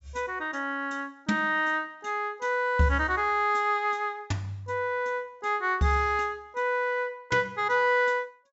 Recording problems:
treble missing; nothing above 8 kHz

